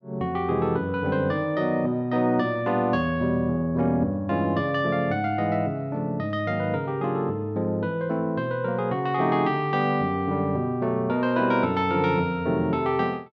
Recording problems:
none

